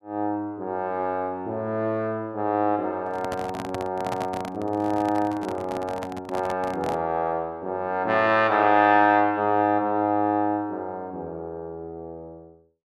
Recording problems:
handling noise; from 3 to 7 s; peak -3 dB vs average level

